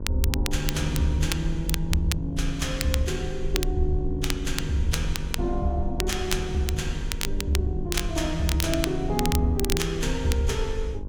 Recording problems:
hum; 50 Hz, harmonics up to 1.1 kHz, SNR 14 dB
low-frequency rumble; below 60 Hz, SNR 6 dB
crackle; vinyl, SNR 6 dB

